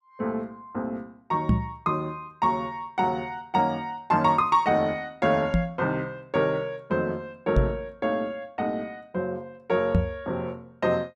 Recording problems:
microphone thump; 4 times, first at 1.5 s; peak +9 dB vs average level

